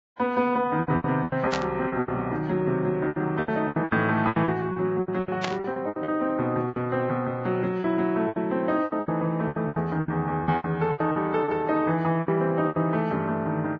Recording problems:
lossy compression; Vorbis, log-spectral distance 2 dB
packet loss; 17% of the sound replaced, filled with repeated pitch periods
burst of static; at 1.5 s and at 5.5 s; peak +1 dB vs average level

